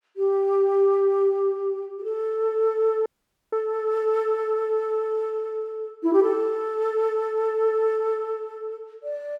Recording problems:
dropout; at 3 s

